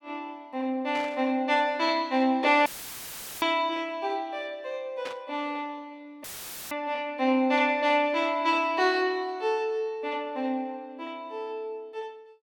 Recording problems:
burst of static; at 1 s and at 5 s; peak -8 dB vs average level
dropout; at 2.5 s for 1 s and at 6 s; filled with static

